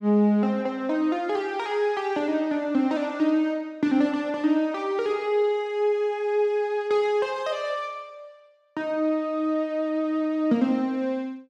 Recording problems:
none

